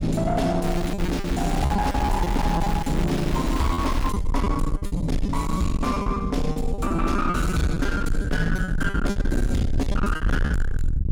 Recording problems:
distorted audio; soft clipping, signal-to-distortion ratio 5 dB
low-frequency rumble; below 86 Hz, SNR 3 dB
lost packets; 11% of the sound replaced, filled with repeated pitch periods
crackling; from 0.5 to 4 s; loose cable, SNR 11 dB

